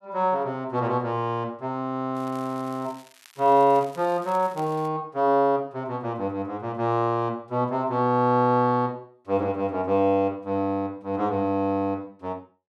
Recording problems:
crackling; from 2 to 5 s; loose cable, SNR 25 dB

